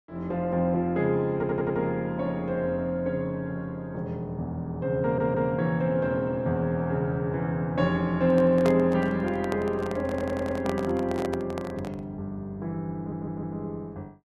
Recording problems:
stutter; 4 times, first at 1.5 s
handling noise; from 8.5 to 12 s; peak -1 dB vs average level

